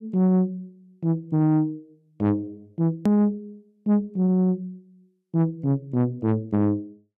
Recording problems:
distorted audio; soft clipping, signal-to-distortion ratio 10 dB
click at an edit; at 3 s

